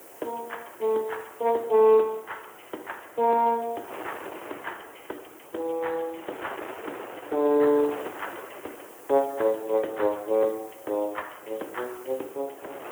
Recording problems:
phone line; 260 Hz to 3.2 kHz, Speex
hiss; SNR 24 dB
wind noise; below 1.4 kHz, SNR 17 dB

